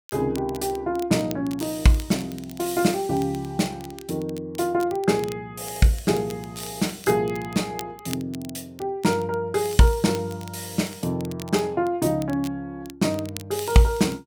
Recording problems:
crackle; vinyl, SNR 19 dB

